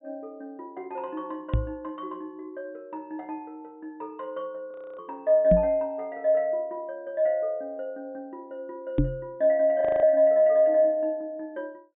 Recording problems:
treble missing; nothing above 4 kHz
microphone thump; at 1.5 s, at 5.5 s and at 9 s; peak +6 dB vs average level
audio freezing; at 4.5 s and at 10 s

